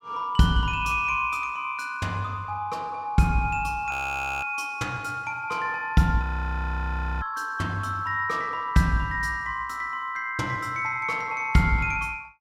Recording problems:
frozen audio; at 4 s for 0.5 s and at 6 s for 1 s

